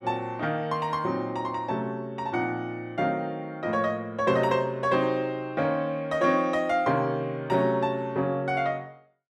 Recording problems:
none

